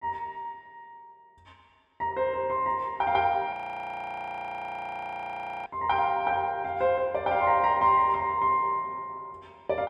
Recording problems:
audio freezing; at 3.5 s for 2 s

